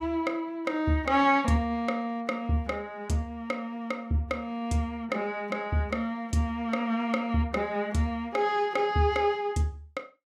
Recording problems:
none

